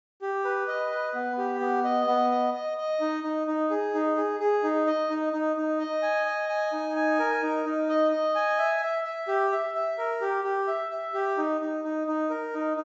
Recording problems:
treble cut off; nothing above 8 kHz

